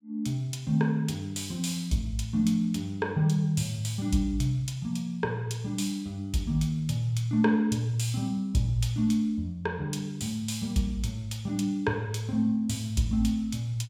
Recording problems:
none

